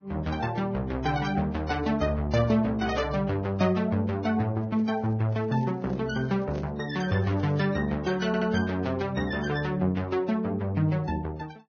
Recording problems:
lossy codec; Vorbis, log-spectral distance 2 dB, nothing above 6.3 kHz
microphone handling noise; from 4.5 to 8 s; peak -10 dB vs average level
stutter; at 8.5 s

